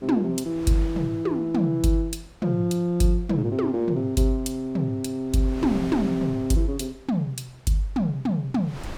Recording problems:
wind noise; below 1 kHz, SNR 20 dB

